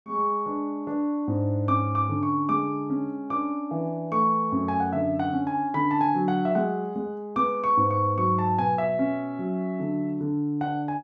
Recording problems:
none

